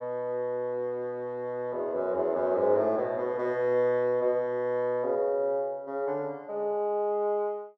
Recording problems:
none

